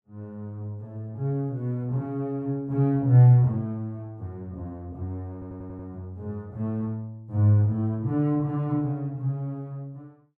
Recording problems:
stutter; at 5.5 s

